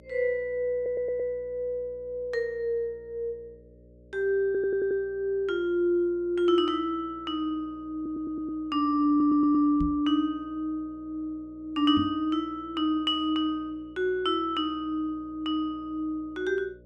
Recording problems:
electrical hum; 60 Hz, harmonics up to 600 Hz, SNR 26 dB
stutter; 4 times, first at 1 s
knock on the microphone; at 10 s and at 12 s; peak -1 dB vs average level

